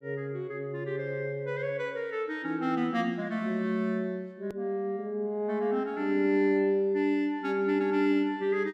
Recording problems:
click at an edit; at 4.5 s

